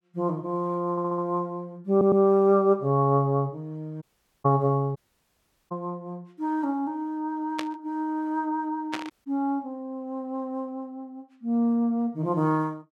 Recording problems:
audio stuttering; at 1 s and at 2 s
audio cutting out; at 4 s, at 5 s for 0.5 s and at 9 s
static burst; at 7.5 s and at 9 s; peak -2 dB vs average level

